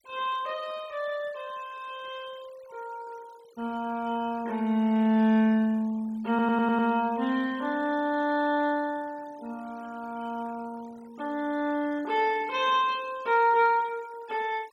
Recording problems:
denoising artefacts; signal-to-artefact ratio 25 dB
stutter; at 6.5 s

